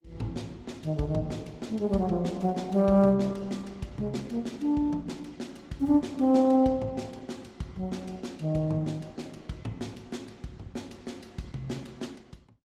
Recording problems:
lossy codec; Opus, log-spectral distance 3 dB, nothing above 18.3 kHz

